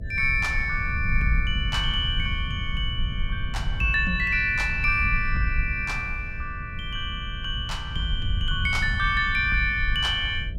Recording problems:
electrical hum; 60 Hz, harmonics up to 660 Hz, SNR 24 dB
rumble; below 90 Hz, SNR 6 dB

